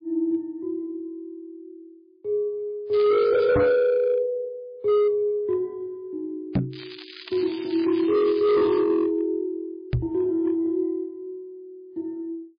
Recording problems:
lossy codec; MP3, log-spectral distance 2 dB, nothing above 10.7 kHz
distorted audio; hard clipping, signal-to-distortion ratio 11 dB
crackling; at 3 s and from 6.5 to 9 s; loose cable, SNR 17 dB
knock on the microphone; at 3.5 s, at 6.5 s and at 10 s; peak +5 dB vs average level

